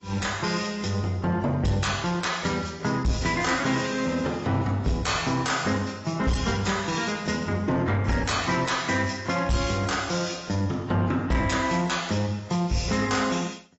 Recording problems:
lossy compression; AAC, log-spectral distance 6 dB, nothing above 7.6 kHz
distortion; soft clipping, signal-to-distortion ratio 11 dB

